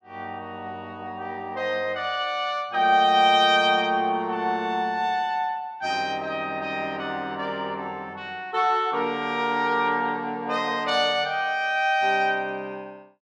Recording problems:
none

